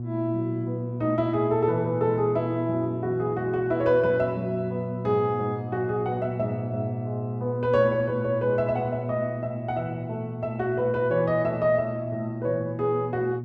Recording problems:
electrical hum; 60 Hz, harmonics up to 360 Hz, SNR 7 dB

